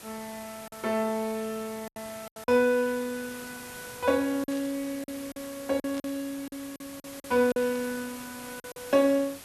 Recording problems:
background hiss; slope -1 dB per octave, SNR 15 dB
lost packets; 8% of the sound replaced, filled with silence
static burst; at 4.5 s, at 6 s and at 7.5 s; peak -13 dB vs average level

